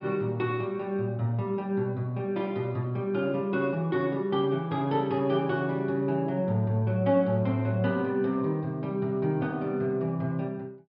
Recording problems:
low-pass filter; nothing above 5.5 kHz

